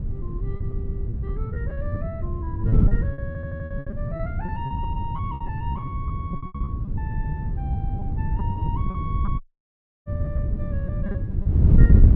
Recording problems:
wind on the microphone; below 130 Hz, SNR -12 dB
packet loss; 15% of the sound replaced, filled with repeated pitch periods
audio stuttering; at 3.5 s
audio cutting out; at 9.5 s for 0.5 s

